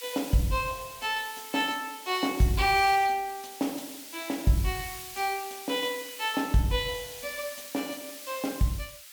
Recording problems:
background hiss; SNR 12 dB

